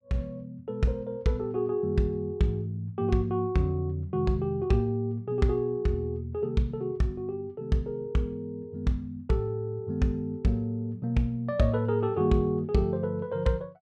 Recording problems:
none

